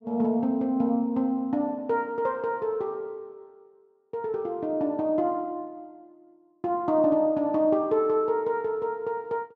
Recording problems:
none

